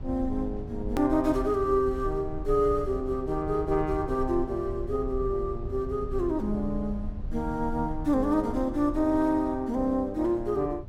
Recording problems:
low-frequency rumble; below 80 Hz, SNR 11 dB
click at an edit; at 1 s

